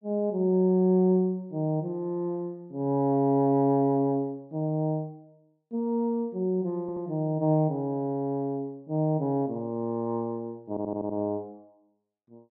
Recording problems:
audio stuttering; at 7 s and at 11 s

